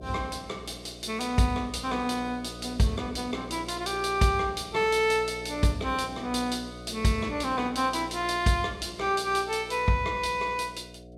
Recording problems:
hum; 60 Hz, harmonics up to 720 Hz, SNR 16 dB

